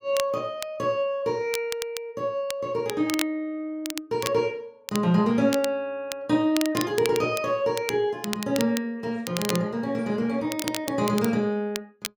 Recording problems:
crackling; vinyl, SNR 9 dB

